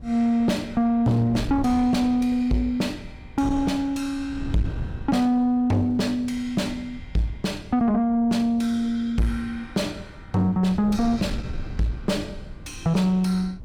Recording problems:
distorted audio; soft clipping, signal-to-distortion ratio 10 dB
wind noise; below 150 Hz, SNR 14 dB

